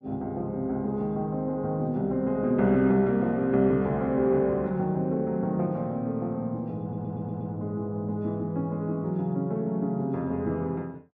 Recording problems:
stutter; at 7 s

